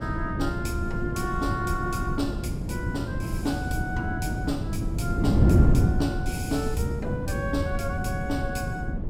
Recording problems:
wind noise; below 210 Hz, SNR -4 dB

